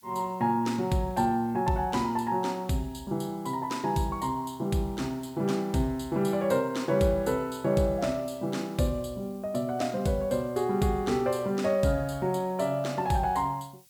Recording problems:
hiss; SNR 28 dB

